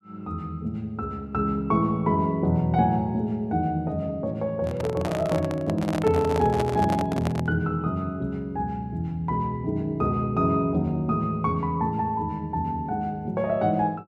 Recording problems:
handling noise; from 4.5 to 7.5 s; peak 0 dB vs average level

